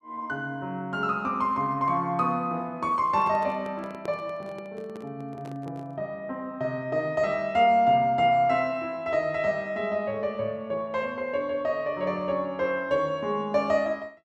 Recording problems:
microphone handling noise; from 3 to 6 s; peak -8 dB vs average level

